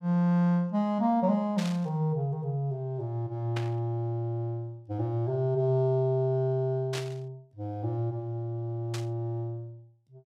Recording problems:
static burst; 4 times, first at 1.5 s; peak -3 dB vs average level

